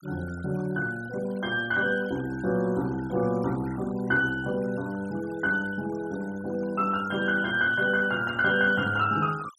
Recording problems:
noise reduction artefacts; signal-to-artefact ratio 22 dB

